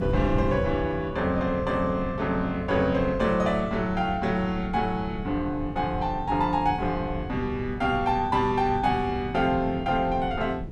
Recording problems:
wind on the microphone; below 190 Hz, SNR 10 dB

